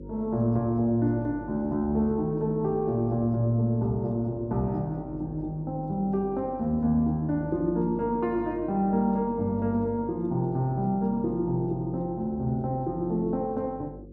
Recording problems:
hum; 50 Hz, harmonics up to 550 Hz, SNR 17 dB

